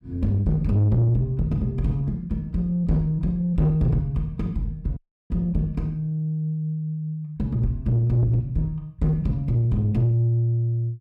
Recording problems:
distortion; soft clipping, signal-to-distortion ratio 10 dB
audio cutting out; at 5 s

